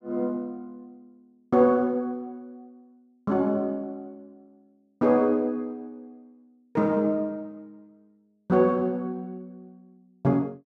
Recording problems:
none

